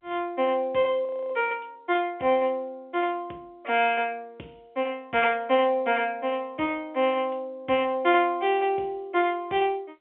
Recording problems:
phone line; 260 Hz to 3.4 kHz, G.711
audio freezing; at 1 s

